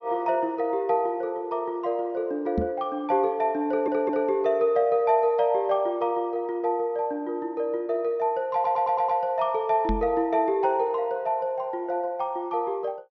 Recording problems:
treble cut off; nothing above 6.1 kHz
knock on the microphone; at 2.5 s and at 10 s; peak +2 dB vs average level
audio stuttering; at 3.5 s and at 8.5 s

